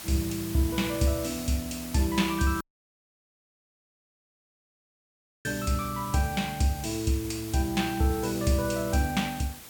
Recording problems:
background hiss; slope -1 dB per octave, SNR 12 dB
dropout; at 2.5 s for 3 s

